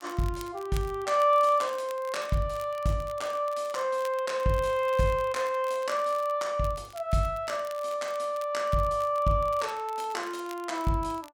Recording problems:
crackle; vinyl, SNR 22 dB

